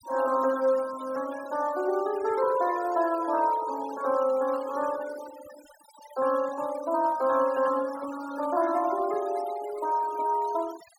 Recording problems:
noise reduction artefacts; signal-to-artefact ratio 17 dB

